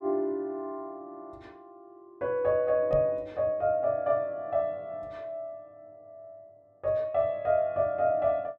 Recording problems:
microphone bump; at 3 s; peak -4 dB vs average level

